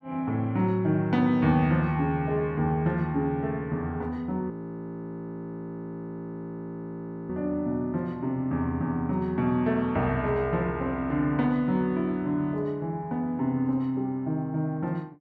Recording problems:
frozen audio; at 4.5 s for 3 s

